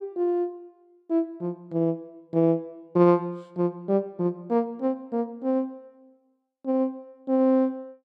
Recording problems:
none

